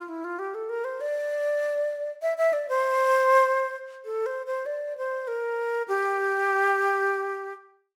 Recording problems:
none

